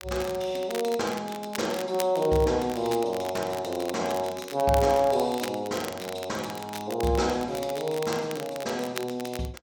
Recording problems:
crackling; vinyl, SNR 13 dB

